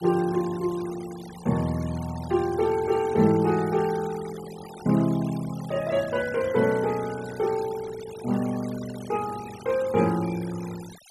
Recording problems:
noise reduction artefacts; signal-to-artefact ratio 18 dB

